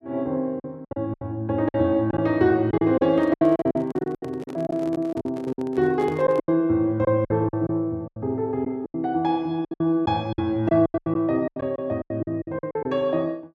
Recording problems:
packet loss; 15% of the sound replaced, filled with silence
handling noise; from 3 to 6.5 s; peak -9 dB vs average level

